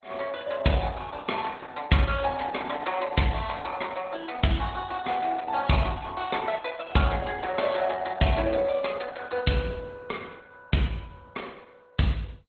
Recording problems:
lossy codec; MP2, then Opus, log-spectral distance 4 dB, nothing above 4.1 kHz

